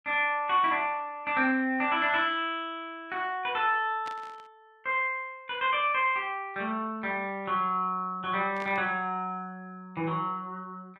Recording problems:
static burst; at 4 s and at 8.5 s; peak -10 dB vs average level

